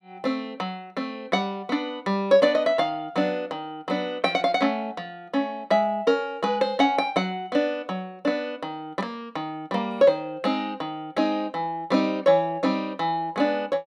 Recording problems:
none

